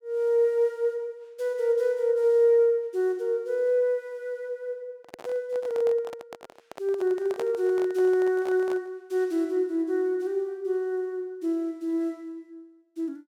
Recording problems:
handling noise; from 5 to 9 s; peak -5 dB vs average level

